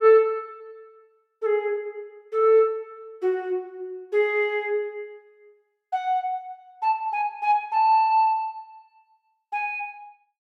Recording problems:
none

